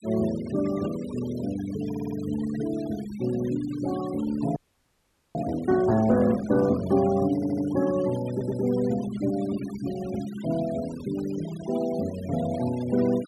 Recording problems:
denoising artefacts; signal-to-artefact ratio 17 dB
audio stuttering; at 2 s, at 7.5 s and at 8.5 s
frozen audio; at 4.5 s for 1 s

